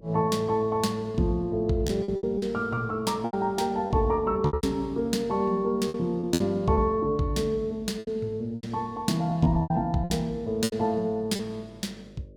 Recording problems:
electrical hum; 50 Hz, harmonics up to 600 Hz, SNR 25 dB
packet loss; 9% of the sound replaced, filled with repeated pitch periods

